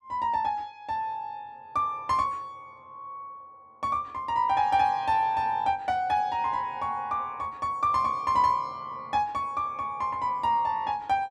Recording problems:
none

